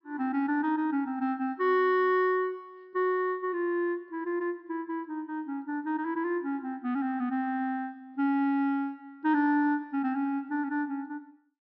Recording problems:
treble missing; nothing above 5.5 kHz

